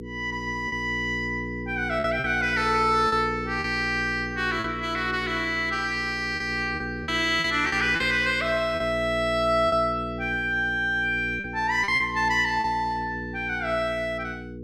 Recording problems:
hum; 60 Hz, harmonics up to 480 Hz, SNR 11 dB
lost packets; 5% of the sound replaced, filled with repeated pitch periods

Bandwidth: 14.5 kHz